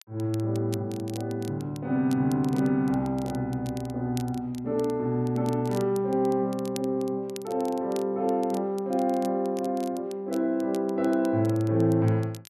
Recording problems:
crackle; vinyl, SNR 21 dB

